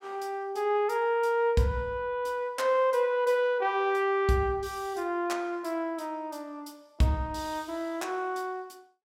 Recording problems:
none

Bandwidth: 17 kHz